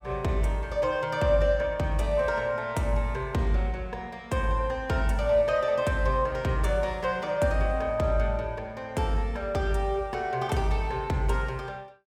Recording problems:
none

